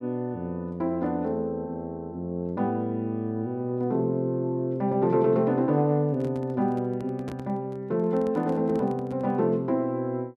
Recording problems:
handling noise; from 6 to 9.5 s; peak -8 dB vs average level

